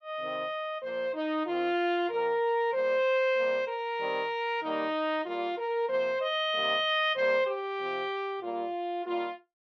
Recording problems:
none

